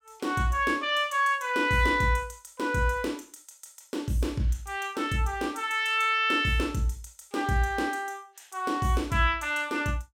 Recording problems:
none

